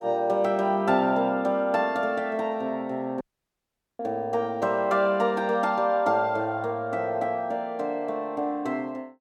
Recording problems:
dropout; at 3 s for 1 s

